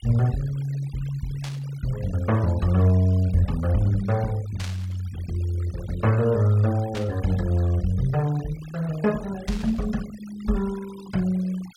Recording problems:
denoising artefacts; signal-to-artefact ratio 21 dB
burst of static; 4 times, first at 1.5 s; peak -7 dB vs average level

